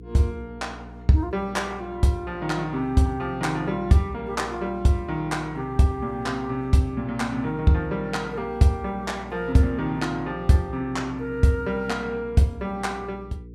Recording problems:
hum; 60 Hz, harmonics up to 480 Hz, SNR 17 dB

